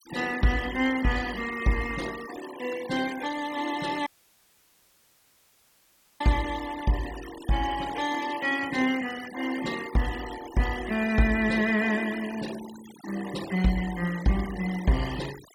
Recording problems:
denoising artefacts; signal-to-artefact ratio 14 dB
audio cutting out; at 4 s for 2 s

